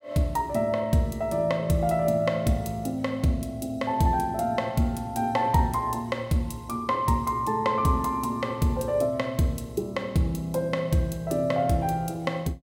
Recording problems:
none

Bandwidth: 16.5 kHz